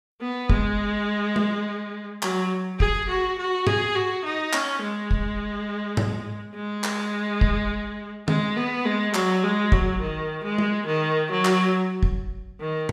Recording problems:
none

